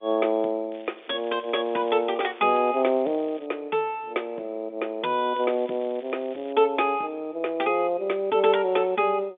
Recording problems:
phone line; 220 Hz to 3.6 kHz, G.711
crackling; from 0.5 to 3.5 s and from 5.5 to 6.5 s; loose cable, SNR 26 dB

